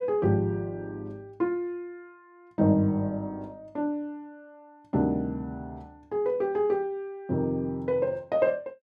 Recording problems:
none

